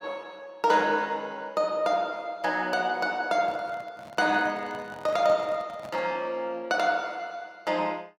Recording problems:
microphone handling noise; from 3.5 to 6 s; peak -11 dB vs average level

